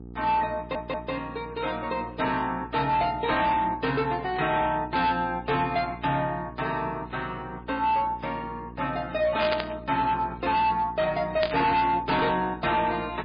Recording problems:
lossy codec; MP3, log-spectral distance 3 dB, nothing above 4.4 kHz
distortion; hard clipping, signal-to-distortion ratio 11 dB
hum; 60 Hz, harmonics up to 780 Hz, SNR 16 dB
stutter; at 0.5 s
burst of static; at 9.5 s and at 11 s; peak +2 dB vs average level

